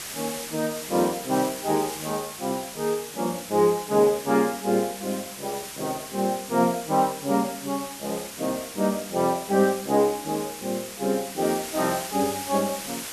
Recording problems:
hiss; slope 0 dB per octave, SNR 10 dB

